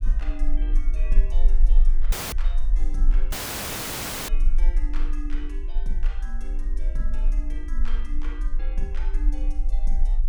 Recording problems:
rumble; below 34 Hz, strongest tone 20 Hz, SNR -14 dB
dropout; at 2 s and at 3.5 s for 1 s

